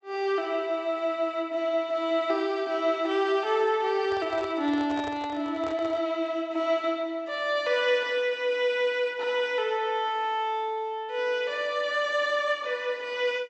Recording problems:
treble cut off; nothing above 7.8 kHz
handling noise; from 4 to 6 s; peak -7 dB vs average level

